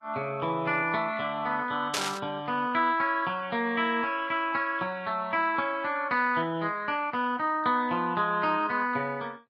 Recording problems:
lossy codec; Vorbis, log-spectral distance 2 dB
burst of static; at 2 s; peak +2 dB vs average level

